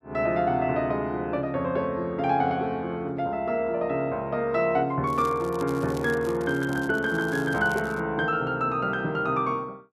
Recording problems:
crackling; from 5 to 8 s; loose cable, SNR 21 dB

